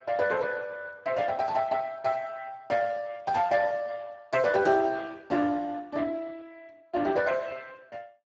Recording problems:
codec artefacts; Speex, log-spectral distance 4 dB, nothing above 7.3 kHz

